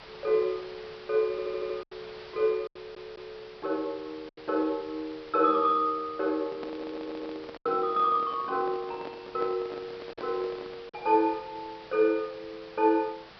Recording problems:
treble cut off; nothing above 5.5 kHz
background hiss; SNR 19 dB
packet loss; 3% of the sound replaced, filled with silence
audio stuttering; at 1.5 s, at 2.5 s and at 6.5 s
handling noise; from 6.5 to 11 s; peak -7 dB vs average level

